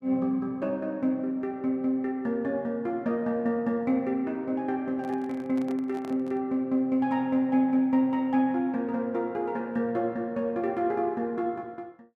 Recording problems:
microphone handling noise; from 5 to 6.5 s; peak -11 dB vs average level

